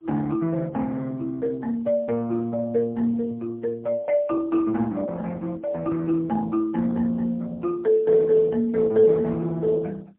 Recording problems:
telephone audio; 190 Hz to 2.6 kHz, AMR-NB, then MP3

